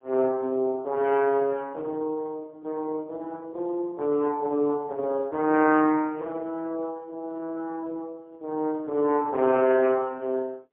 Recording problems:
phone line; 190 Hz to 2.7 kHz, AMR-NB, then MP3

